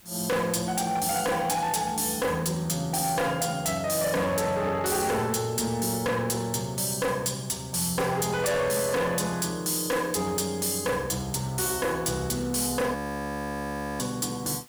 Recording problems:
distortion; hard clipping, signal-to-distortion ratio 8 dB
hiss; slope 0 dB per octave, SNR 27 dB
frozen audio; at 13 s for 1 s

